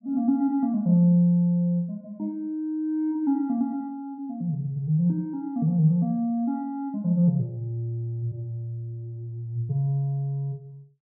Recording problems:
none

